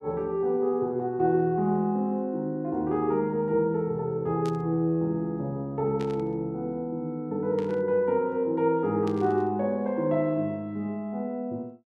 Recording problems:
static burst; 4 times, first at 4.5 s; peak -12 dB vs average level

